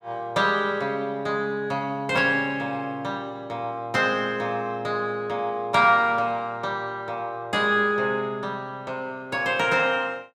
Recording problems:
none

